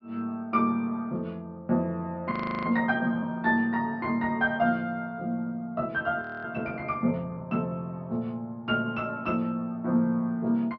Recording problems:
treble missing; nothing above 5.5 kHz
audio freezing; at 2.5 s and at 6 s

